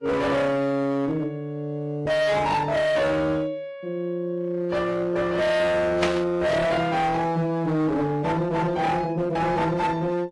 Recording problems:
lossy compression; AAC, log-spectral distance 2 dB, nothing above 11.3 kHz
distortion; hard clipping, uneven, signal-to-distortion ratio 7 dB
burst of static; at 6 s; peak +2 dB vs average level

